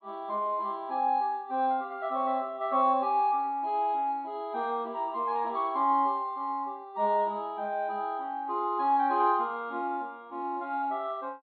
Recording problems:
treble missing; nothing above 4.3 kHz

